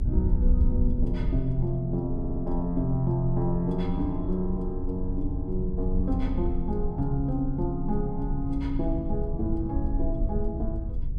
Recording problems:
rumble; below 64 Hz, strongest tone 22 Hz, SNR 2 dB
audio stuttering; at 2 s

